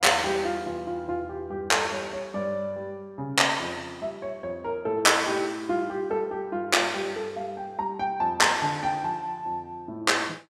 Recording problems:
none

